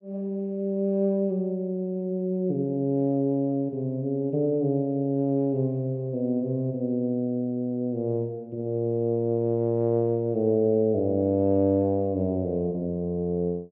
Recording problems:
none

